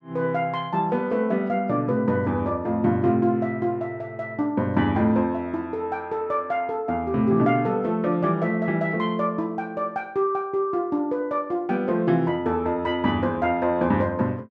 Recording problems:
none

